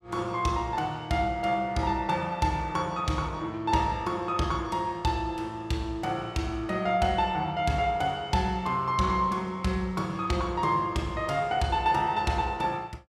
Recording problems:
none

